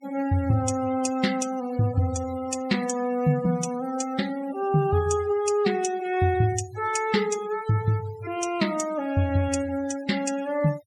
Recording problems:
noise reduction artefacts; signal-to-artefact ratio 16 dB

